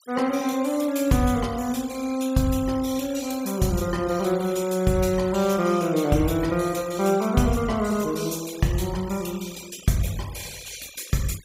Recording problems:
denoising artefacts; signal-to-artefact ratio 19 dB

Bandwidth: 15.5 kHz